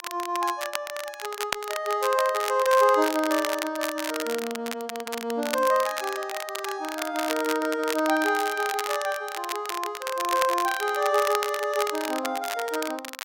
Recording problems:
crackling; vinyl, SNR 8 dB

